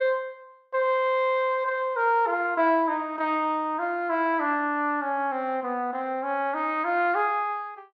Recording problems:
none

